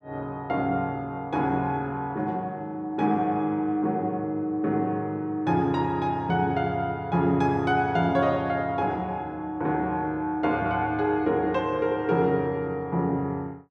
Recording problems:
none

